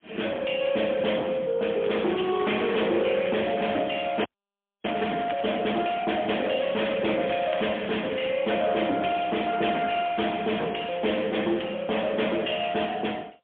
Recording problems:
phone line; 240 Hz to 3.4 kHz, AMR-NB, then MP3
distorted audio; soft clipping, signal-to-distortion ratio 12 dB
crackle; from 2 to 4 s, from 4 to 5.5 s and from 6.5 to 8.5 s; loose cable, SNR 15 dB
frozen audio; at 4.5 s for 0.5 s

